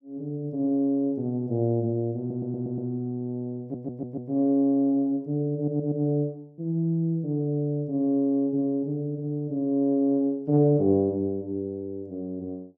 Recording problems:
audio stuttering; at 2 s, at 3.5 s and at 5.5 s

